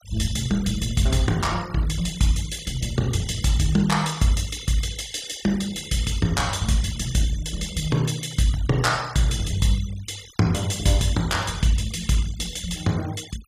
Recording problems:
noise reduction artefacts; signal-to-artefact ratio 18 dB

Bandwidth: 15 kHz